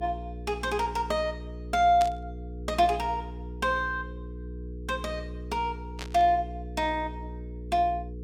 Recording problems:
hum; 60 Hz, harmonics up to 480 Hz, SNR 11 dB
static burst; at 2 s and at 6 s; peak -4 dB vs average level

